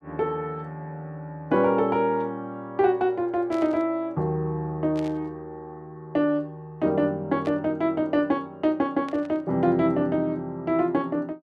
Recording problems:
burst of static; 4 times, first at 3.5 s; peak -13 dB vs average level

